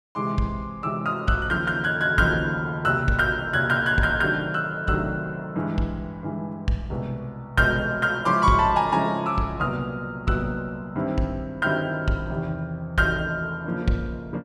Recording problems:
none

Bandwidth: 14 kHz